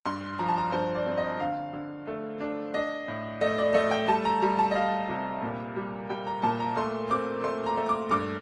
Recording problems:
lossy codec; Opus, then AAC, log-spectral distance 3 dB

